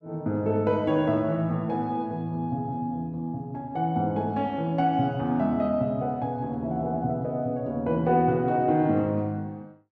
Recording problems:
none

